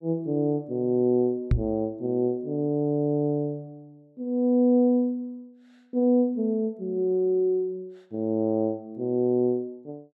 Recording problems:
microphone thump; at 1.5 s; peak +6 dB vs average level

